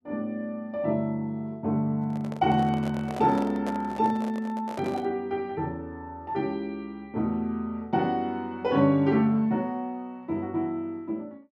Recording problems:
handling noise; from 2 to 5 s; peak -5 dB vs average level

